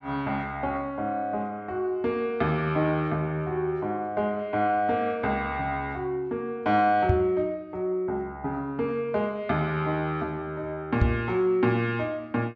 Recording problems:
treble cut off; nothing above 8 kHz
knock on the microphone; at 7 s and at 11 s; peak +7 dB vs average level

